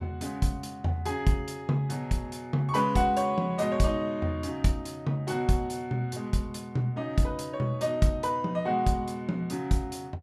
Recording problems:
none

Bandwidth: 14 kHz